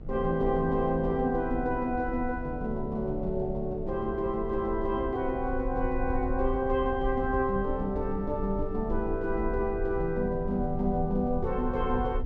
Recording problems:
hum; 60 Hz, harmonics up to 1.5 kHz, SNR 25 dB
low-frequency rumble; below 66 Hz, strongest tone 22 Hz, SNR 9 dB

